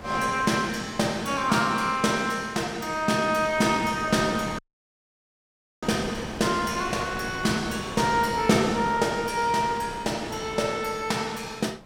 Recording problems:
wind noise; below 1 kHz, SNR 14 dB
audio cutting out; at 4.5 s for 1 s

